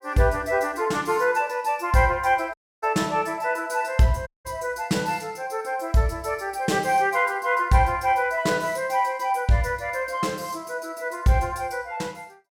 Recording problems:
audio cutting out; at 2.5 s and at 4.5 s

